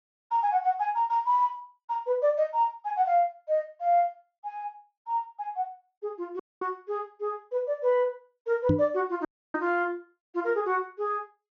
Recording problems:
treble missing; nothing above 6.6 kHz
dropout; at 6.5 s and at 9.5 s
microphone bump; at 8.5 s; peak +7 dB vs average level

